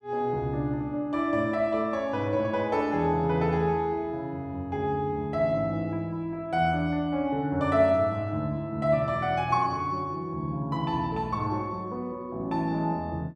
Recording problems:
none

